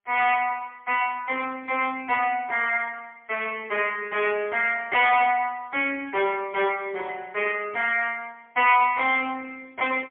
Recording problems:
telephone audio; 320 Hz to 3.4 kHz, AMR-NB, then MP3
distorted audio; hard clipping, signal-to-distortion ratio 12 dB

